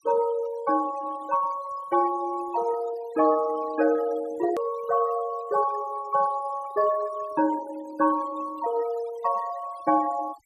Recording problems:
noise reduction artefacts; signal-to-artefact ratio 19 dB
click at an edit; at 4.5 s

